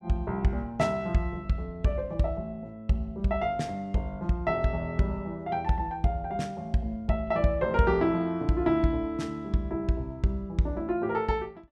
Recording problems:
none

